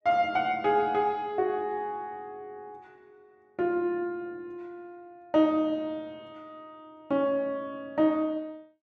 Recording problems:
none

